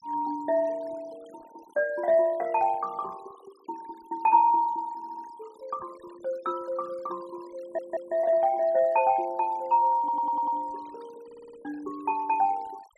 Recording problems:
denoising artefacts; signal-to-artefact ratio 26 dB
audio stuttering; 4 times, first at 5 s

